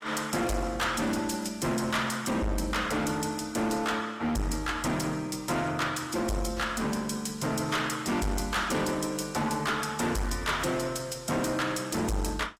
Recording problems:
lossy compression; AAC, log-spectral distance 4 dB, nothing above 15.1 kHz
distortion; hard clipping, uneven, signal-to-distortion ratio 6 dB

